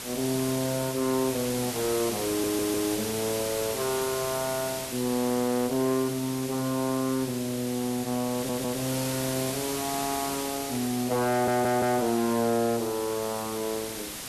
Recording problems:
distortion; soft clipping, signal-to-distortion ratio 10 dB
background hiss; slope -1 dB per octave, SNR 6 dB
audio stuttering; at 2.5 s, at 8.5 s and at 11 s

